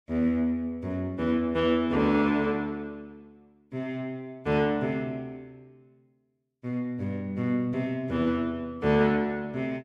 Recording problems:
none

